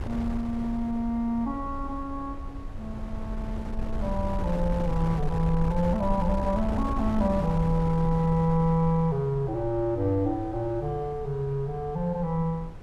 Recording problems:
wind on the microphone; below 94 Hz, SNR 8 dB

